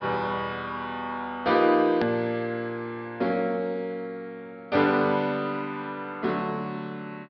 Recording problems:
treble cut off; nothing above 5.5 kHz
edit click; at 2 s

